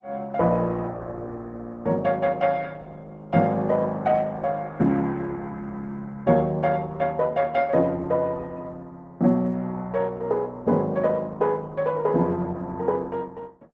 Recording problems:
lossy codec; Opus, log-spectral distance 2 dB

